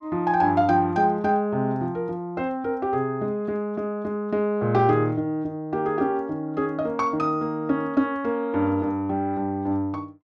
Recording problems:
none

